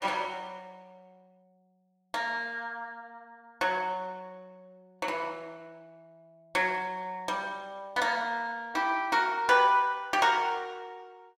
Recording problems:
none

